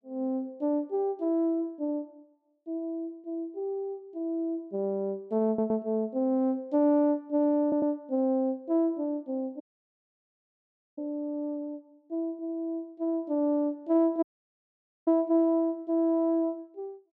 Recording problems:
stutter; at 5.5 s and at 7.5 s
dropout; at 9.5 s for 1.5 s and at 14 s for 1 s

